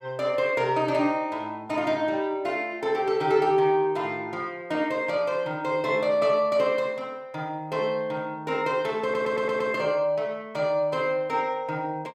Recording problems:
stutter; at 9 s

